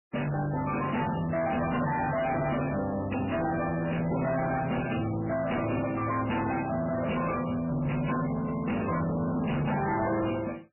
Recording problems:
codec artefacts; MP3, log-spectral distance 7 dB, nothing above 2.9 kHz
distorted audio; soft clipping, signal-to-distortion ratio 7 dB

